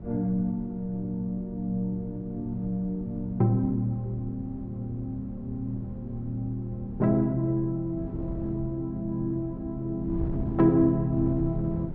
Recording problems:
wind noise; below 170 Hz, SNR 11 dB

